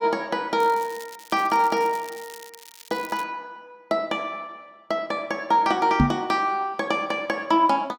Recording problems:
crackle; from 0.5 to 3 s; loose cable, SNR 20 dB
microphone thump; at 6 s; peak +8 dB vs average level

